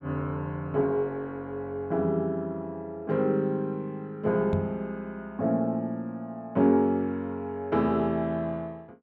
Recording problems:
microphone bump; at 4.5 s; peak +2 dB vs average level

